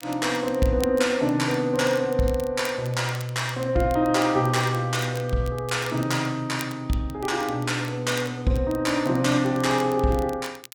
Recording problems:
crackle; vinyl, SNR 20 dB

